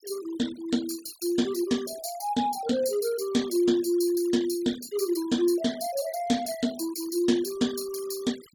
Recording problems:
noise reduction artefacts; signal-to-artefact ratio 17 dB

